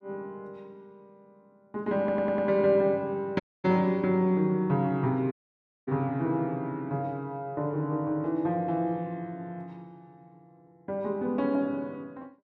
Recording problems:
stutter; at 2 s
dropout; at 3.5 s and at 5.5 s for 0.5 s

